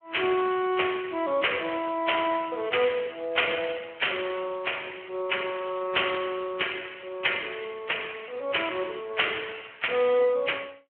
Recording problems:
telephone audio; 300 Hz to 3.2 kHz, Speex

